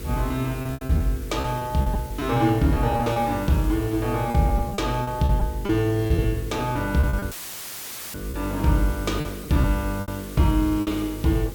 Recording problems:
electrical hum; 50 Hz, harmonics up to 500 Hz, SNR 12 dB
background hiss; slope 0 dB per octave, SNR 18 dB
packet loss; 11% of the sound replaced, filled with repeated pitch periods
audio cutting out; at 7.5 s for 1 s; filled with static

